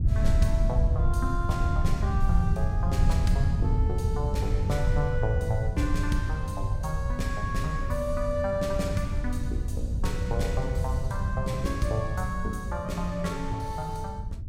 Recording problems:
rumble; below 96 Hz, SNR -2 dB

